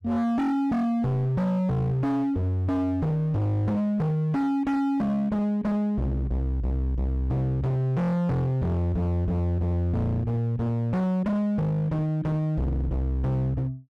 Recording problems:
distorted audio; hard clipping, signal-to-distortion ratio 6 dB

